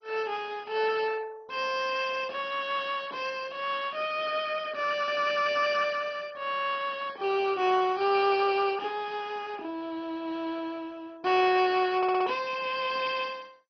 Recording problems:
lossy compression; MP2, log-spectral distance 4 dB, nothing above 5.2 kHz
stutter; at 12 s

